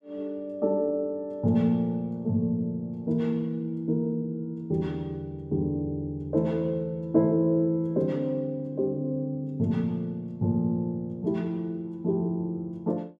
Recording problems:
none

